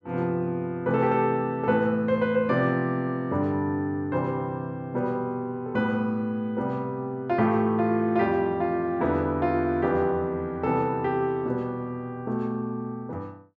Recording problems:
none

